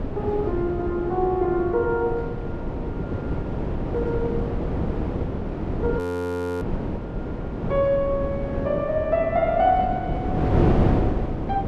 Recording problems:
wind on the microphone; below 390 Hz, SNR 2 dB
audio freezing; at 6 s for 0.5 s

